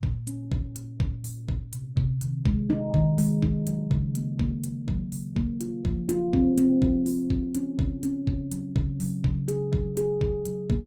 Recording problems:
lossy codec; Opus, log-spectral distance 2 dB, nothing above 19 kHz

